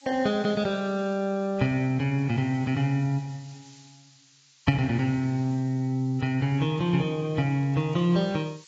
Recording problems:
codec artefacts; AAC, log-spectral distance 7 dB
background hiss; slope +5 dB per octave, SNR 27 dB

